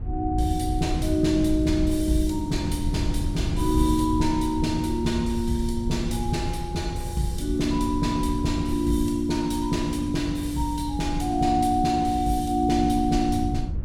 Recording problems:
wind noise; below 100 Hz, SNR 6 dB

